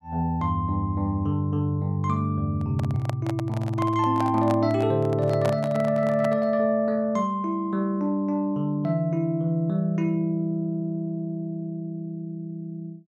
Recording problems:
microphone handling noise; from 2.5 to 6.5 s; peak 0 dB vs average level

